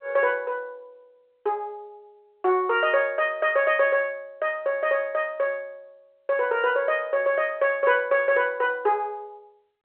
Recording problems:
phone line; 320 Hz to 3.3 kHz, G.711

